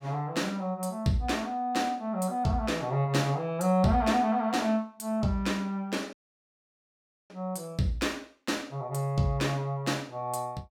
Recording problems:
audio cutting out; at 6 s for 1 s

